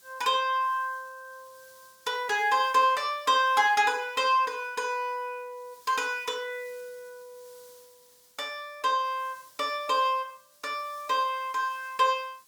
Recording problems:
hiss; SNR 28 dB

